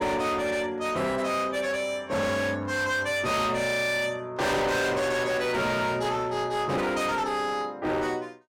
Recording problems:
distorted audio; hard clipping, uneven, signal-to-distortion ratio 6 dB

